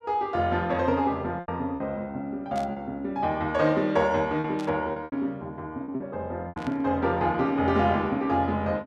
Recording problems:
packet loss; 5% of the sound replaced, filled with repeated pitch periods
burst of static; at 2.5 s, at 4.5 s and at 6.5 s; peak -11 dB vs average level

